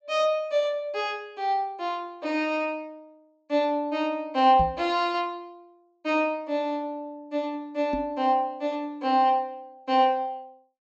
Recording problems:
low-pass filter; nothing above 8 kHz
knock on the microphone; at 4.5 s and at 8 s; peak 0 dB vs average level

